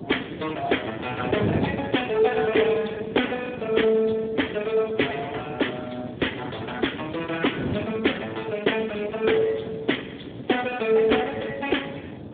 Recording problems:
phone line; 280 Hz to 3.4 kHz, Speex
wind on the microphone; below 390 Hz, SNR 10 dB

